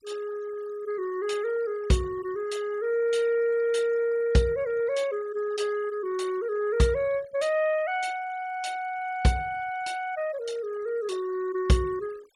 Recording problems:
denoising artefacts; signal-to-artefact ratio 21 dB

